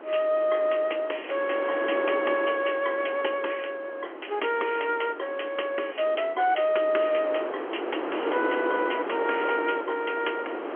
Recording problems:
telephone audio; 280 Hz to 3.3 kHz, G.711
wind on the microphone; below 960 Hz, SNR 7 dB

